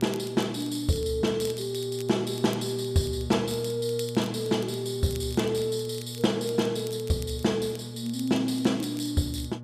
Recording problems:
electrical hum; 60 Hz, harmonics up to 840 Hz, SNR 11 dB
crackling; vinyl, SNR 19 dB

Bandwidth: 14.5 kHz